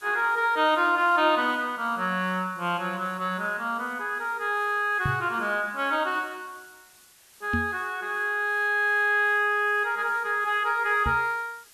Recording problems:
background hiss; slope +1 dB per octave, SNR 27 dB
knock on the microphone; at 5 s, at 7.5 s and at 11 s; peak 0 dB vs average level

